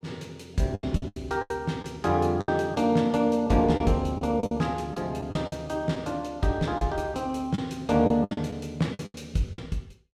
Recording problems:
packet loss; 11% of the sound replaced, filled with the last packet

